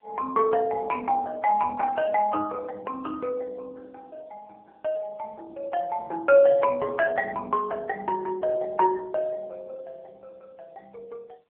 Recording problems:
phone line; 320 Hz to 2.3 kHz, AMR-NB

